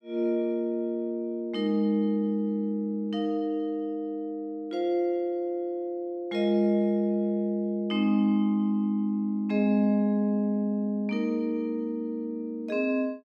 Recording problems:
none

